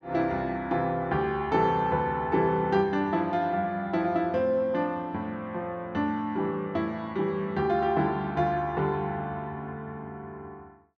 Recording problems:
none

